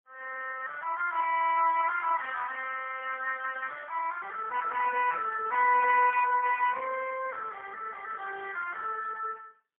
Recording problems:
telephone audio; 370 Hz to 3.3 kHz, AMR-NB, then MP3

